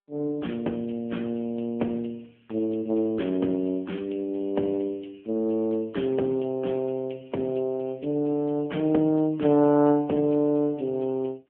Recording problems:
telephone audio; 130 Hz to 3.4 kHz, AMR-NB

